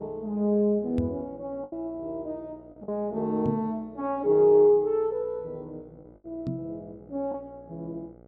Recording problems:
hum; 60 Hz, harmonics up to 1.4 kHz, SNR 26 dB
packet loss; 2% of the sound replaced, filled with the last packet
microphone bump; at 1 s, at 3.5 s and at 6.5 s; peak 0 dB vs average level

